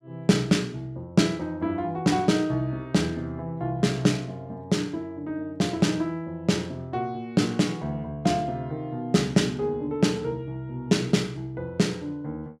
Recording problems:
none

